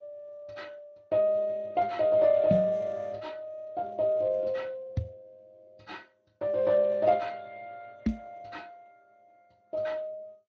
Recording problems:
codec artefacts; MP2, then Speex, log-spectral distance 2 dB
microphone thump; at 2.5 s, at 5 s and at 8 s; peak +4 dB vs average level

